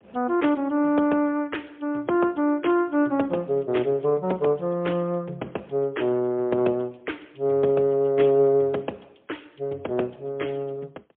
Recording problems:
phone line; 240 Hz to 3.4 kHz, AMR-NB, then MP3

